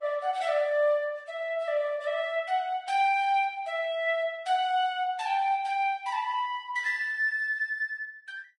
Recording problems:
lossy codec; Opus, then Vorbis, log-spectral distance 2 dB

